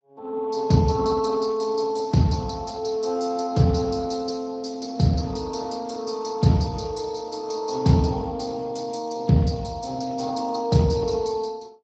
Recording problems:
lossy codec; Speex, log-spectral distance 6 dB, nothing above 17 kHz

